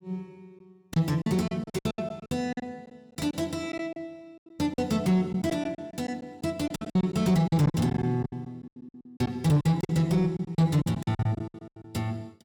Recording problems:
distortion; soft clipping, signal-to-distortion ratio 10 dB
packet loss; 17% of the sound replaced, filled with silence

